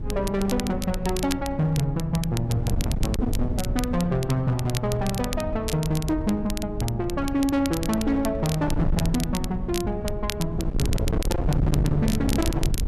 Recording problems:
distortion; hard clipping, signal-to-distortion ratio 8 dB
wind noise; below 140 Hz, SNR 5 dB
crackling; vinyl, SNR 11 dB

